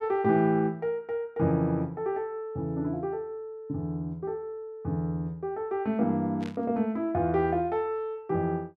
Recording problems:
static burst; at 6.5 s; peak -12 dB vs average level

